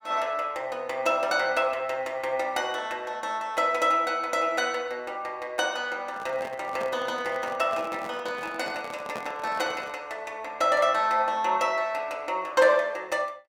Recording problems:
handling noise; from 6 to 10 s; peak -6 dB vs average level

